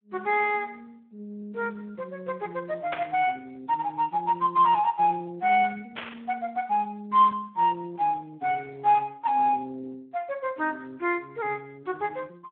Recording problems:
telephone audio; 280 Hz to 3.7 kHz, Speex
static burst; at 3 s and at 6 s; peak -2 dB vs average level

